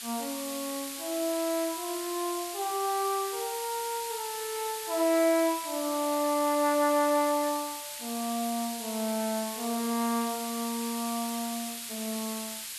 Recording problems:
background hiss; SNR 6 dB

